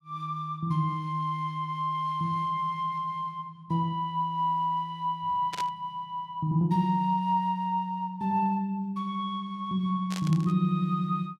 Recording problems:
static burst; at 5.5 s and at 10 s; peak -4 dB vs average level

